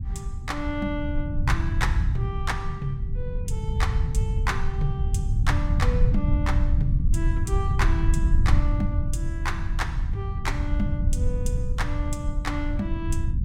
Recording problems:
low-frequency rumble; below 96 Hz, SNR -5 dB

